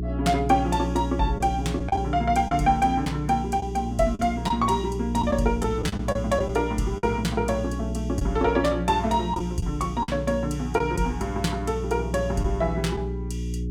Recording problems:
hum; 60 Hz, harmonics up to 420 Hz, SNR 6 dB
lost packets; 4% of the sound replaced, filled with the last packet

